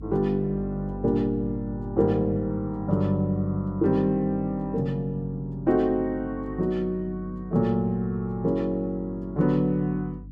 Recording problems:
hum; 50 Hz, harmonics up to 300 Hz, SNR 15 dB

